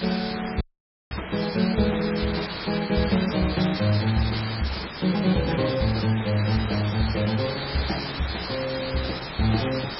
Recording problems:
codec artefacts; MP3, log-spectral distance 15 dB, nothing above 5.5 kHz
hiss; SNR 7 dB
dropout; at 0.5 s for 0.5 s

